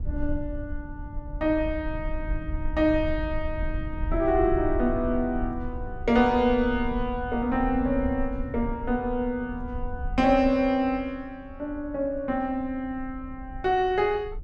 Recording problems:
rumble; below 70 Hz, SNR 10 dB

